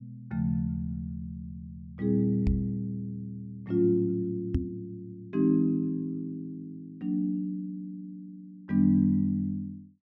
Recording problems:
microphone bump; at 2.5 s and at 4.5 s; peak +5 dB vs average level

